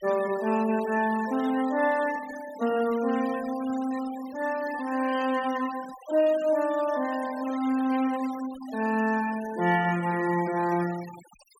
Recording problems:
noise reduction artefacts; signal-to-artefact ratio 17 dB

